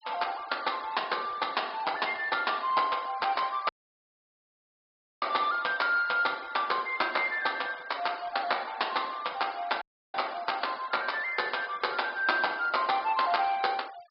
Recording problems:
low-pass filter; nothing above 5 kHz
noise reduction artefacts; signal-to-artefact ratio 20 dB
dropout; at 3.5 s for 1.5 s and at 10 s

